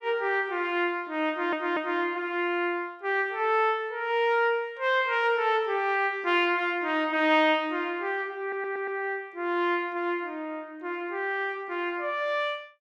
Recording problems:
stutter; at 1.5 s and at 8.5 s

